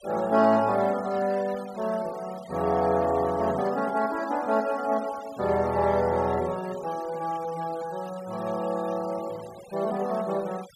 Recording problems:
denoising artefacts; signal-to-artefact ratio 20 dB

